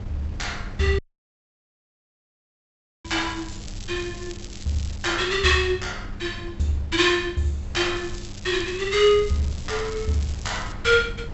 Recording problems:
low-pass filter; nothing above 7.8 kHz
hum; 50 Hz, harmonics up to 600 Hz, SNR 19 dB
wind on the microphone; below 100 Hz, SNR 15 dB
audio cutting out; at 1 s for 2 s
crackling; from 3 to 5 s and from 8 to 11 s; loose cable, SNR 18 dB

